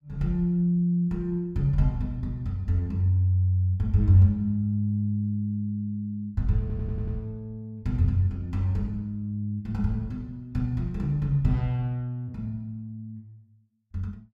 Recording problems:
stutter; at 6.5 s

